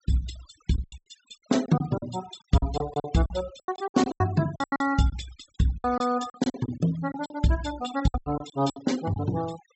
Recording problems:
low-pass filter; nothing above 7.7 kHz
denoising artefacts; signal-to-artefact ratio 17 dB
lost packets; 16% of the sound replaced, filled with silence

